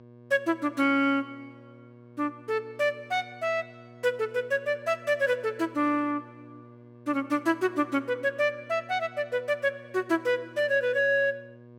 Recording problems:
hum; 60 Hz, harmonics up to 1.2 kHz, SNR 23 dB

